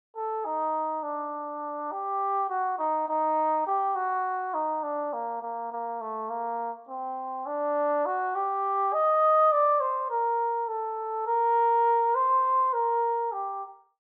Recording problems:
none

